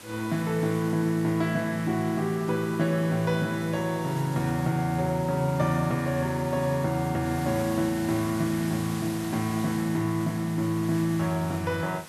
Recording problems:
background hiss; slope -2 dB per octave, SNR 15 dB

